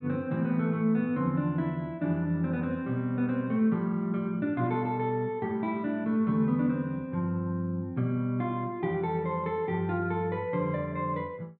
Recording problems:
low-pass filter; nothing above 5.5 kHz

